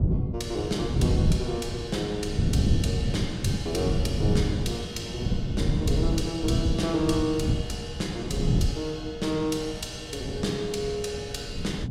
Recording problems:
wind noise; below 170 Hz, SNR -2 dB

